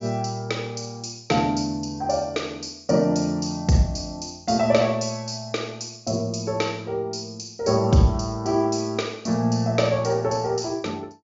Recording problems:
low-pass filter; nothing above 7.3 kHz

